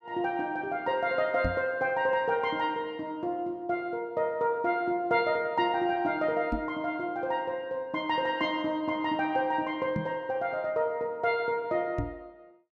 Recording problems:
microphone bump; 4 times, first at 1.5 s; peak +1 dB vs average level

